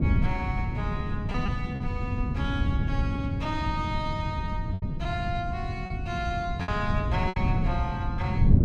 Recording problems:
wind noise; below 160 Hz, SNR -3 dB
lost packets; 4% of the sound replaced, filled with repeated pitch periods

